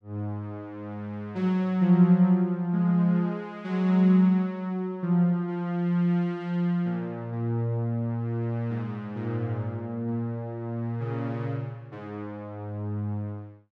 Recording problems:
none

